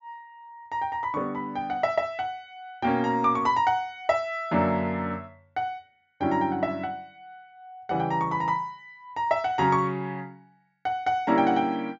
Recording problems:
treble cut off; nothing above 7.4 kHz

